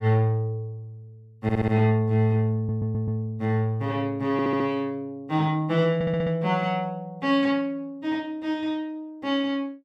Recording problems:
stutter; 4 times, first at 1.5 s

